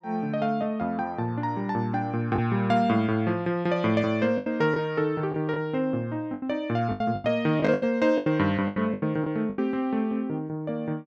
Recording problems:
packet loss; 8% of the sound replaced, filled with the last packet

